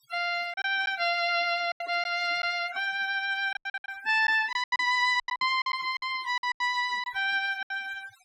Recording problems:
noise reduction artefacts; signal-to-artefact ratio 19 dB
packet loss; 12% of the sound replaced, filled with silence

